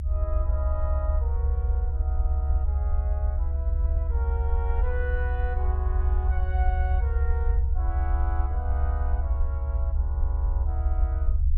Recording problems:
low-frequency rumble; below 70 Hz, SNR -12 dB

